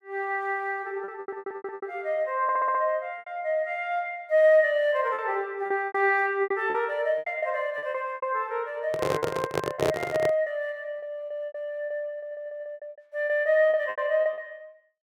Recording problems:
packet loss; 12% of the sound replaced, filled with repeated pitch periods
stutter; at 1 s, at 2.5 s and at 12 s
microphone handling noise; from 9 to 10 s; peak +5 dB vs average level

